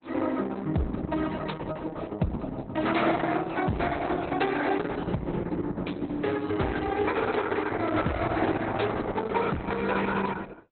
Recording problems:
codec artefacts; Opus, log-spectral distance 6 dB, nothing above 4 kHz
distorted audio; hard clipping, signal-to-distortion ratio 11 dB

